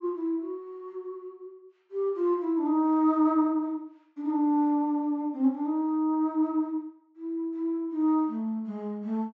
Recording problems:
treble missing; nothing above 8 kHz

